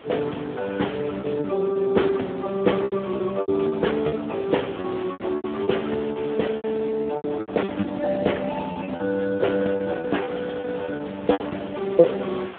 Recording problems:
telephone audio; 220 Hz to 3.5 kHz, Speex
hiss; SNR 18 dB
wind noise; below 950 Hz, SNR 25 dB
packet loss; 12% of the sound replaced, filled with repeated pitch periods

